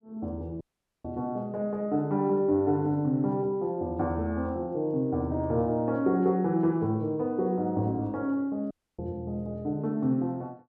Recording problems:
audio cutting out; at 0.5 s and at 8.5 s

